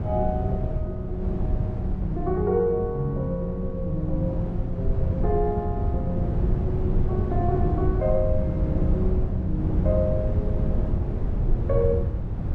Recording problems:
rumble; below 120 Hz, SNR -1 dB

